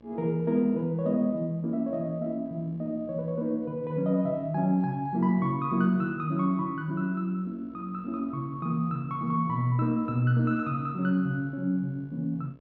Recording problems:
mains hum; 60 Hz, harmonics up to 1.7 kHz, SNR 28 dB

